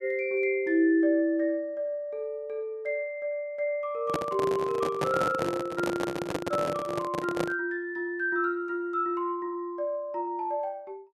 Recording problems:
microphone handling noise; from 4 to 7.5 s; peak +3 dB vs average level

